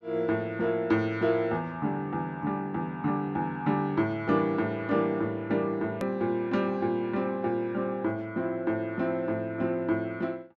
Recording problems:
edit click; at 6 s

